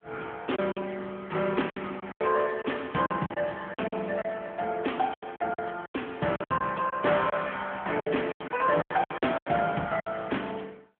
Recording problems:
phone line; 190 Hz to 3.4 kHz, AMR-NB
packet loss; 12% of the sound replaced, filled with silence

